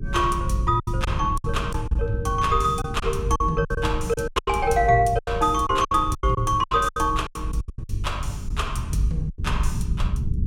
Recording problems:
hum; 60 Hz, harmonics up to 420 Hz, SNR 19 dB
rumble; below 110 Hz, SNR 6 dB
lost packets; 13% of the sound replaced, filled with silence

